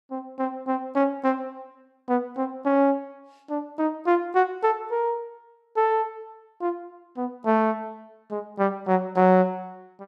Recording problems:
none

